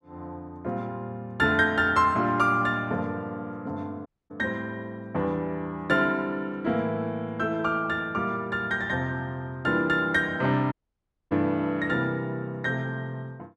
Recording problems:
dropout; at 4 s and at 11 s for 0.5 s

